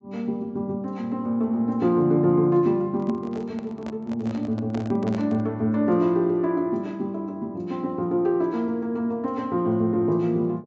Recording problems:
treble cut off; nothing above 8 kHz
microphone handling noise; from 3 to 5.5 s; peak -8 dB vs average level

